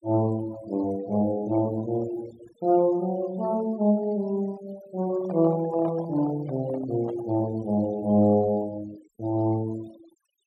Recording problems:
denoising artefacts; signal-to-artefact ratio 21 dB
microphone handling noise; from 5 to 7.5 s; peak -8 dB vs average level

